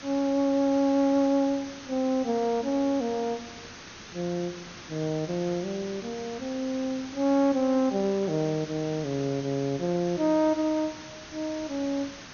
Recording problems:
treble missing; nothing above 6.6 kHz
hiss; slope -1 dB per octave, SNR 15 dB

